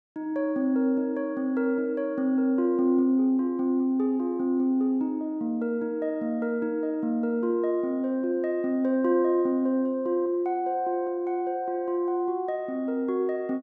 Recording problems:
none

